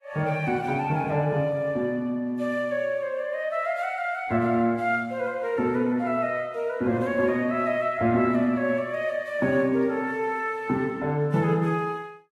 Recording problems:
lossy compression; Vorbis, then AAC, log-spectral distance 2 dB, nothing above 13.1 kHz

